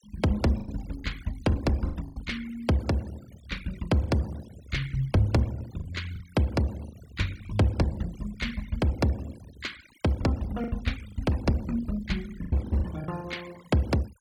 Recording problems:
denoising artefacts; signal-to-artefact ratio 20 dB
lost packets; 7% of the sound replaced, filled with the last packet

